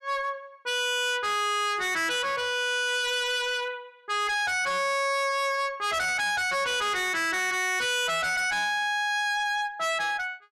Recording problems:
distortion; hard clipping, signal-to-distortion ratio 6 dB

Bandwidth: 12.5 kHz